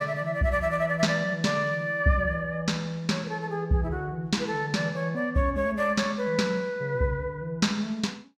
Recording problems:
none

